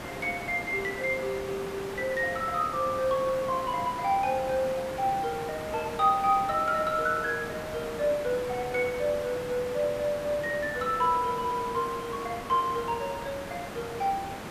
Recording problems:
hiss; slope -6 dB per octave, SNR 9 dB

